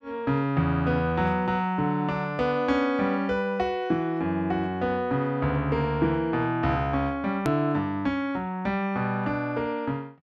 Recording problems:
click at an edit; at 7.5 s

